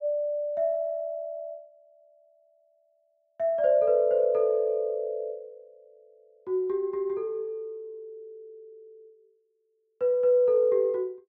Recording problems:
none

